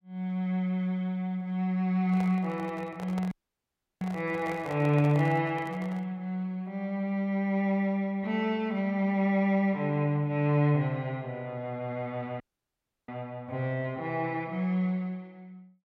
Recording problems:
microphone handling noise; from 2 to 6 s; peak -7 dB vs average level
audio cutting out; at 3.5 s for 0.5 s and at 12 s for 0.5 s

